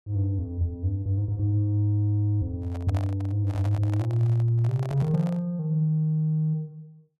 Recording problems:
microphone handling noise; from 2.5 to 5.5 s; peak -8 dB vs average level

